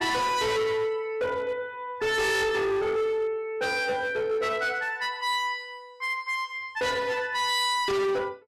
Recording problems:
distorted audio; hard clipping, signal-to-distortion ratio 6 dB

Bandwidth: 13.5 kHz